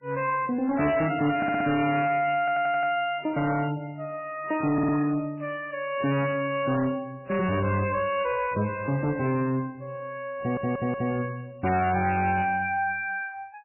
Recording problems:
lossy compression; MP3, log-spectral distance 3 dB, nothing above 2.4 kHz
distortion; soft clipping, signal-to-distortion ratio 10 dB
stutter; 4 times, first at 1.5 s

